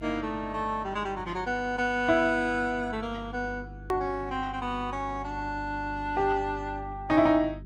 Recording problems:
lossy codec; Vorbis, log-spectral distance 2 dB, nothing above 16.1 kHz
hum; 50 Hz, harmonics up to 400 Hz, SNR 16 dB
click at an edit; at 4 s

